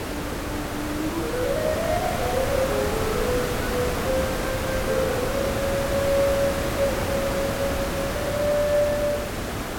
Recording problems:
background hiss; slope -5 dB per octave, SNR 1 dB

